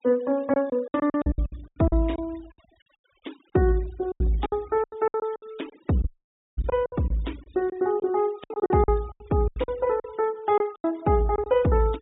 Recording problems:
low-pass filter; nothing above 4 kHz
denoising artefacts; signal-to-artefact ratio 25 dB
lost packets; 16% of the sound replaced, filled with silence
dropout; at 6 s for 0.5 s

